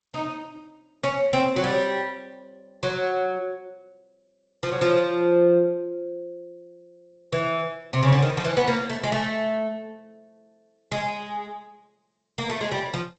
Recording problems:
codec artefacts; Opus, then G.722, log-spectral distance 2 dB, nothing above 7.8 kHz

